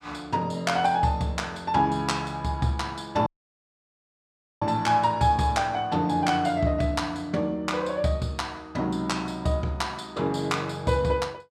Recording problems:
audio cutting out; at 3.5 s for 1.5 s

